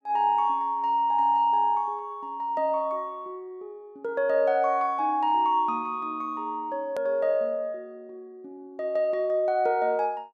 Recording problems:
hard cut with a click; at 7 s

